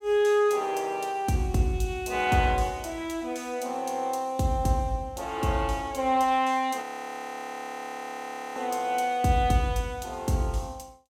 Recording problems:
frozen audio; at 7 s for 1.5 s

